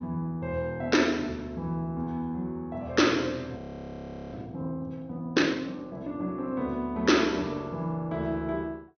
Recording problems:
treble missing; nothing above 6.2 kHz
frozen audio; at 3.5 s for 0.5 s

